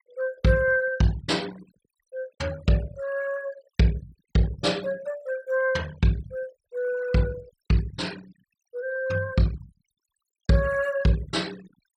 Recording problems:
noise reduction artefacts; signal-to-artefact ratio 19 dB

